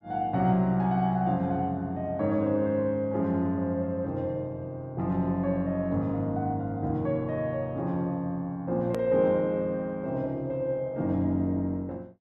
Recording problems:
edit click; at 9 s

